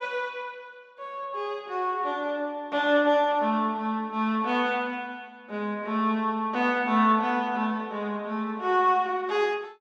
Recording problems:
none

